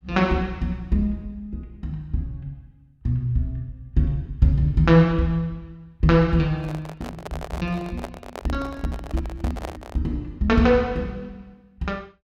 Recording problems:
handling noise; from 6.5 to 10 s; peak -6 dB vs average level

